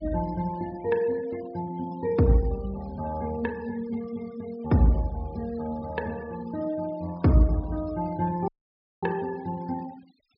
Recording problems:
low-pass filter; nothing above 5.2 kHz
denoising artefacts; signal-to-artefact ratio 23 dB
audio cutting out; at 8.5 s for 0.5 s

